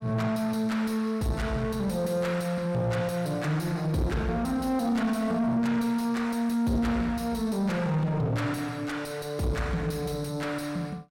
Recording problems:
distorted audio; soft clipping, signal-to-distortion ratio 9 dB

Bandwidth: 16.5 kHz